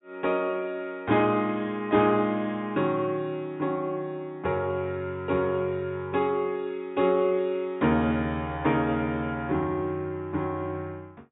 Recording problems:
treble missing; nothing above 4 kHz

